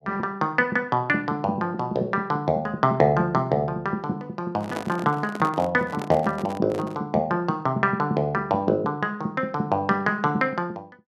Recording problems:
handling noise; from 4.5 to 7 s; peak -3 dB vs average level

